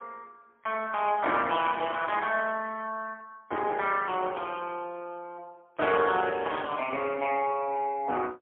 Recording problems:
phone line; 260 Hz to 3.3 kHz, AMR-NB, then MP3

